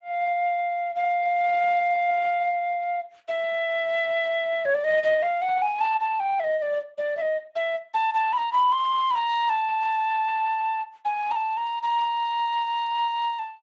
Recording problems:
codec artefacts; Speex, then Speex, log-spectral distance 2 dB

